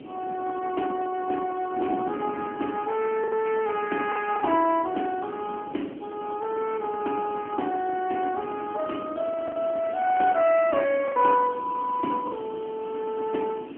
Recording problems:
phone line; 260 Hz to 3.1 kHz, AMR-NB
background hiss; SNR 27 dB
wind on the microphone; below 410 Hz, SNR 12 dB
lost packets; 3% of the sound replaced, filled with the last packet

